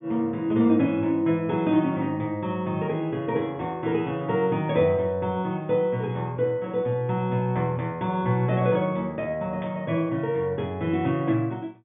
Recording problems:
treble cut off; nothing above 3.6 kHz

